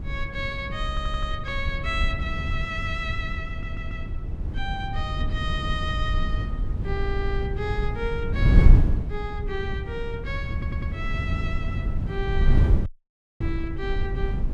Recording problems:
wind on the microphone; below 94 Hz, SNR -5 dB
audio stuttering; 4 times, first at 1 s
dropout; at 13 s for 0.5 s

